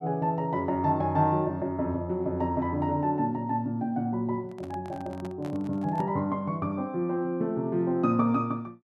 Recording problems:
microphone handling noise; from 4.5 to 6 s; peak -11 dB vs average level

